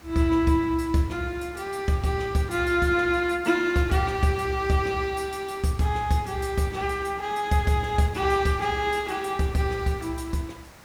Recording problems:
hiss; SNR 24 dB

